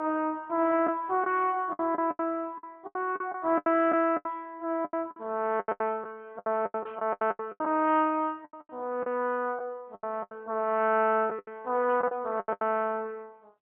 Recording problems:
phone line; 260 Hz to 3.3 kHz, AMR-NB
packet loss; 15% of the sound replaced, filled with the last packet
burst of static; at 7 s and at 12 s; peak -18 dB vs average level

